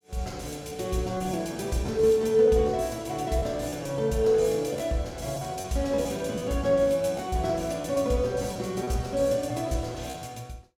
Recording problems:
lost packets; 6% of the sound replaced, filled with repeated pitch periods

